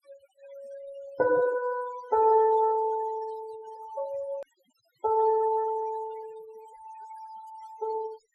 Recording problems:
denoising artefacts; signal-to-artefact ratio 19 dB
edit click; at 4.5 s

